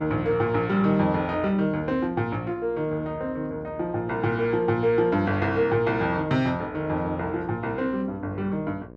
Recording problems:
mains hum; 60 Hz, harmonics up to 1.2 kHz, SNR 19 dB

